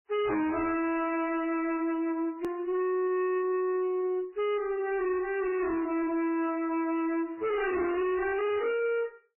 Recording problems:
codec artefacts; MP3, then AAC, log-spectral distance 2 dB, nothing above 2.7 kHz
distorted audio; hard clipping, uneven, signal-to-distortion ratio 7 dB
click at an edit; at 2.5 s

